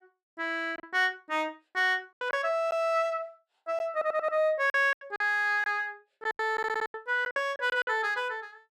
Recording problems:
lost packets; 10% of the sound replaced, filled with silence
audio stuttering; at 4 s and at 6.5 s

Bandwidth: 14 kHz